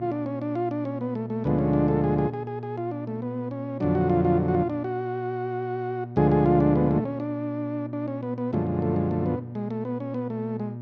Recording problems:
hum; 60 Hz, harmonics up to 600 Hz, SNR 11 dB

